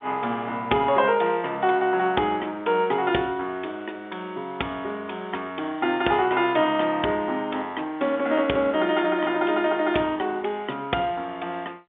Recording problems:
phone line; 220 Hz to 3.6 kHz, G.711

